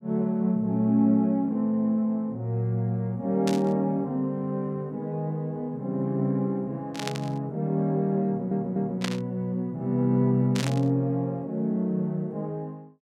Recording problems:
static burst; 4 times, first at 3.5 s; peak 0 dB vs average level
audio stuttering; at 8.5 s

